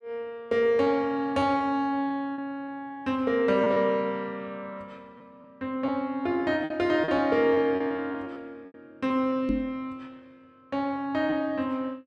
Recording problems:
packet loss; 6% of the sound replaced, filled with repeated pitch periods
knock on the microphone; at 9.5 s; peak +2 dB vs average level

